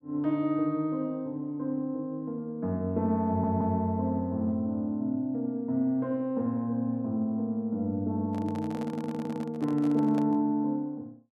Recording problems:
stutter; at 3.5 s and at 9 s
microphone handling noise; from 8.5 to 10 s; peak -7 dB vs average level

